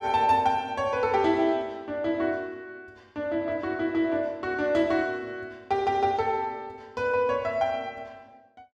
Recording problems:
none

